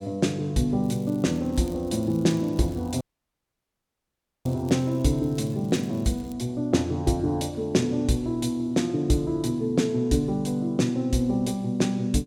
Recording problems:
crackling; from 1 to 6.5 s; loose cable, SNR 27 dB
audio cutting out; at 3 s for 1.5 s

